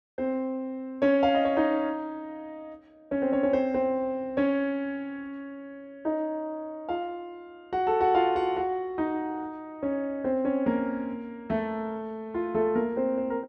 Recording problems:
none

